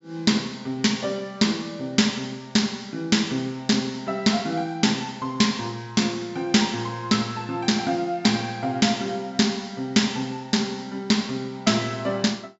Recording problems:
treble cut off; nothing above 8 kHz

